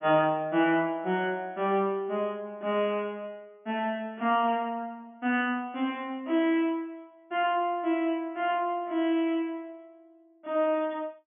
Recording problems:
treble missing; nothing above 3.4 kHz

